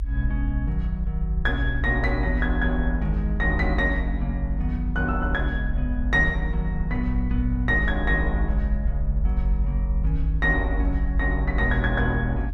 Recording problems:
low-frequency rumble; below 62 Hz, strongest tone 48 Hz, SNR 1 dB

